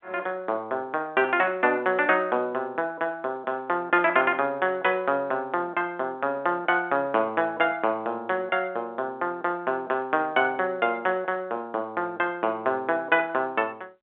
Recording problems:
phone line; 240 Hz to 3.6 kHz, G.711

